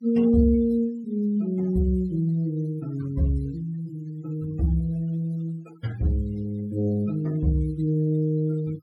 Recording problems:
denoising artefacts; signal-to-artefact ratio 25 dB

